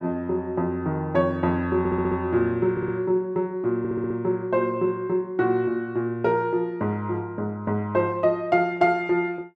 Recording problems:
audio stuttering; at 2 s, at 2.5 s and at 4 s

